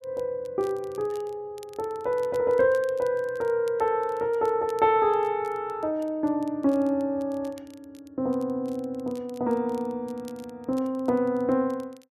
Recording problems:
crackling; vinyl, SNR 29 dB

